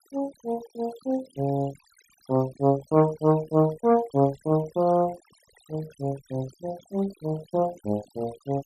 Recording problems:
noise reduction artefacts; signal-to-artefact ratio 21 dB

